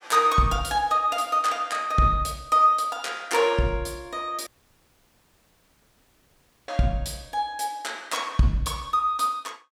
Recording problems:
audio cutting out; at 4.5 s for 2 s

